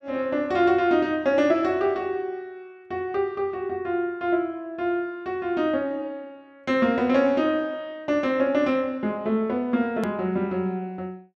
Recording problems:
click at an edit; at 10 s

